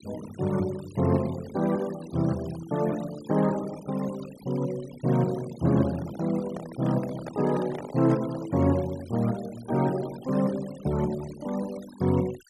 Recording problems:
noise reduction artefacts; signal-to-artefact ratio 19 dB
handling noise; from 5.5 to 8.5 s; peak -6 dB vs average level

